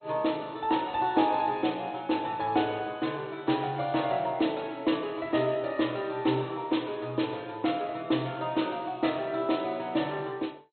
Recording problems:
lossy compression; MP2, log-spectral distance 4 dB, nothing above 4.1 kHz

